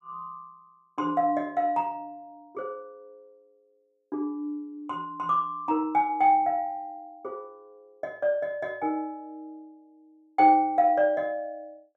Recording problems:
none

